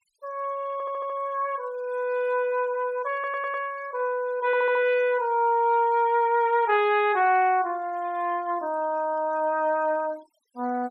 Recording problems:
noise reduction artefacts; signal-to-artefact ratio 28 dB
stutter; at 0.5 s, at 3 s and at 4.5 s

